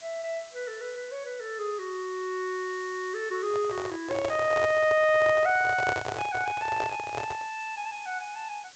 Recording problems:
low-pass filter; nothing above 8 kHz
background hiss; slope +1 dB per octave, SNR 20 dB
microphone handling noise; from 3.5 to 7.5 s; peak +2 dB vs average level

